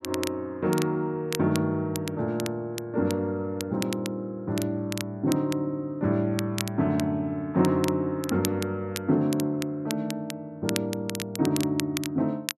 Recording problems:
crackling; vinyl, SNR 10 dB

